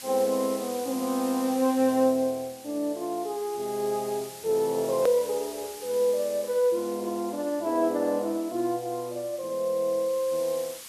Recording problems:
background hiss; slope +2 dB per octave, SNR 15 dB
edit click; at 5 s

